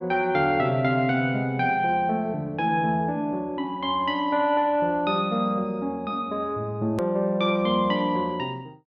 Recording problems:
hard cut with a click; at 7 s

